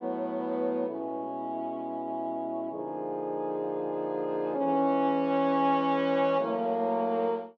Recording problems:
none

